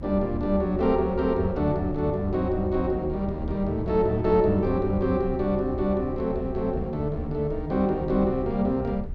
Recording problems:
low-frequency rumble; below 78 Hz, SNR 11 dB

